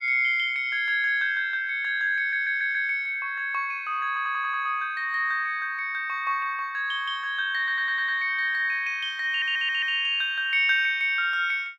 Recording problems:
audio stuttering; 4 times, first at 2 s

